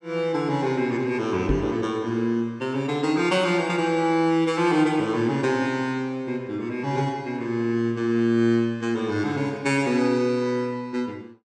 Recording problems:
knock on the microphone; at 1.5 s; peak +2 dB vs average level

